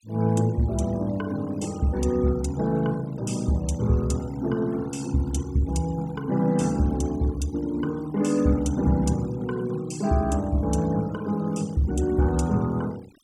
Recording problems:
denoising artefacts; signal-to-artefact ratio 22 dB

